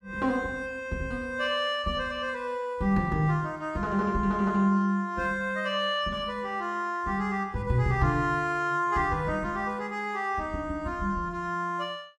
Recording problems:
none

